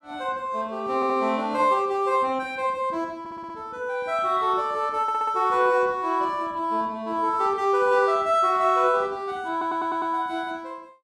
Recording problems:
audio stuttering; 4 times, first at 1 s

